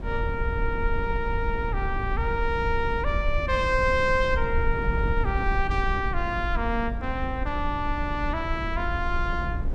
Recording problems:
wind noise; below 76 Hz, SNR 3 dB

